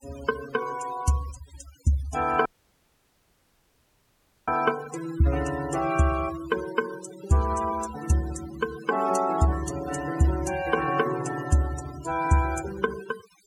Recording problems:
denoising artefacts; signal-to-artefact ratio 14 dB
audio cutting out; at 2.5 s for 2 s

